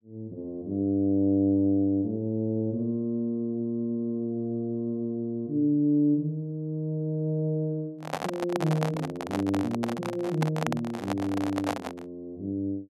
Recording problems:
handling noise; from 8 to 12 s; peak +3 dB vs average level

